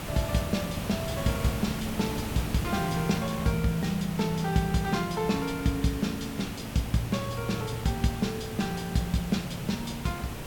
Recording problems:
background hiss; slope -4 dB per octave, SNR 6 dB

